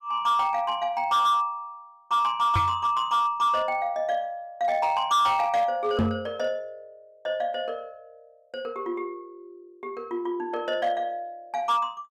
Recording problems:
distorted audio; hard clipping, signal-to-distortion ratio 11 dB
knock on the microphone; at 2.5 s and at 6 s; peak +5 dB vs average level

